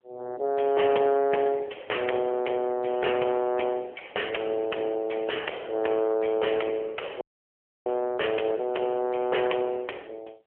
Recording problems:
phone line; 320 Hz to 3.2 kHz, AMR-NB
distortion; soft clipping, signal-to-distortion ratio 12 dB
audio cutting out; at 7 s for 0.5 s

